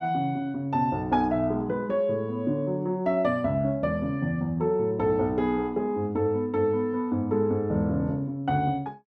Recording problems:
none

